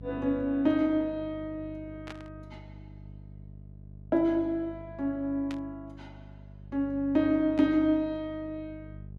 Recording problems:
hum; 50 Hz, harmonics up to 450 Hz, SNR 18 dB
burst of static; at 2 s, at 5.5 s and at 7.5 s; peak -10 dB vs average level

